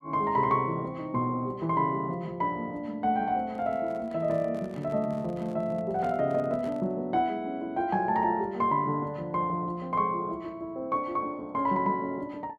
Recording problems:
handling noise; from 3.5 to 7 s; peak -10 dB vs average level

